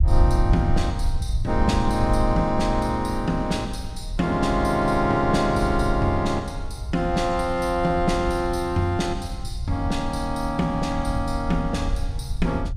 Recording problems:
low-frequency rumble; below 80 Hz, SNR 6 dB

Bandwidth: 15.5 kHz